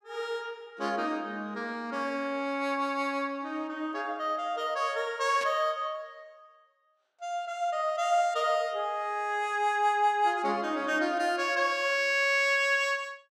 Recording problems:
burst of static; at 5.5 s; peak -9 dB vs average level

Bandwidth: 15.5 kHz